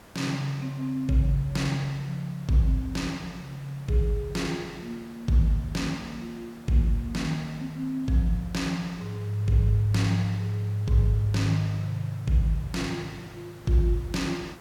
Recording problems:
background hiss; slope -5 dB per octave, SNR 22 dB

